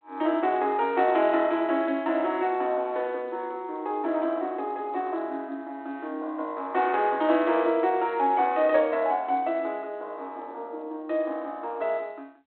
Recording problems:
telephone audio; 240 Hz to 3.4 kHz, G.726

